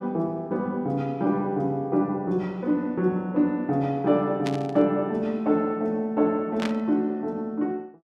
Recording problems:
static burst; at 4.5 s and at 6.5 s; peak -3 dB vs average level

